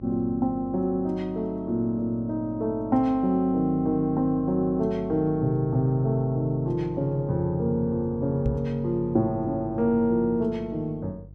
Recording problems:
hum; 50 Hz, harmonics up to 350 Hz, SNR 18 dB
microphone bump; at 8.5 s; peak +2 dB vs average level

